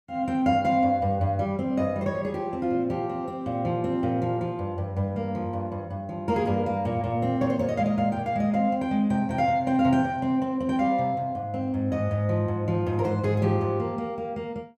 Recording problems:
none

